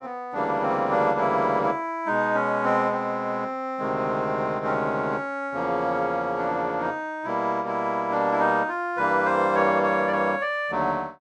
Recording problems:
none

